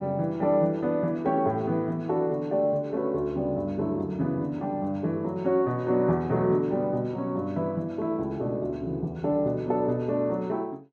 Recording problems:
none

